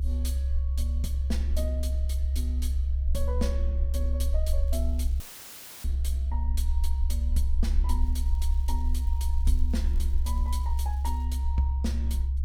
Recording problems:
low-frequency rumble; below 68 Hz, strongest tone 66 Hz, SNR -10 dB
crackling; at 4.5 s and from 8 to 11 s; loose cable, SNR 22 dB
dropout; at 5 s for 0.5 s; filled with static

